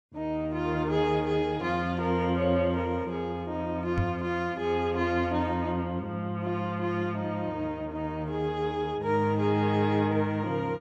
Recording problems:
microphone thump; at 4 s; peak +2 dB vs average level

